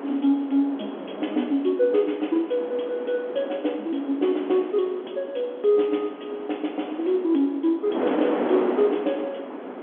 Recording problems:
phone line; 220 Hz to 3.5 kHz, G.711
wind noise; below 720 Hz, SNR 8 dB

